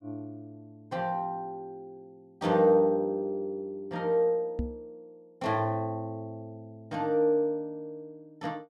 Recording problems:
microphone thump; at 4.5 s; peak 0 dB vs average level

